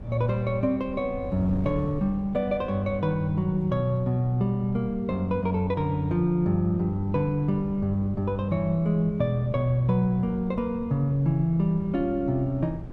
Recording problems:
wind on the microphone; below 200 Hz, SNR 14 dB

